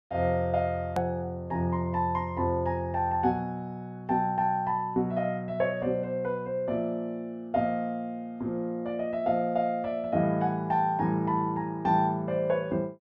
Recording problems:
hard cut with a click; at 1 s

